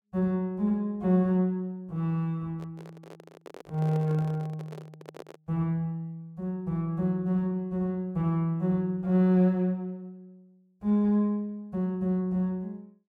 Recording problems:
handling noise; from 2.5 to 5.5 s; peak -10 dB vs average level

